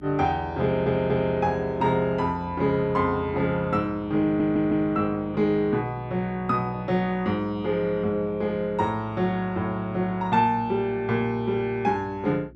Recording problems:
hum; 60 Hz, harmonics up to 360 Hz, SNR 22 dB
audio stuttering; at 0.5 s and at 4 s

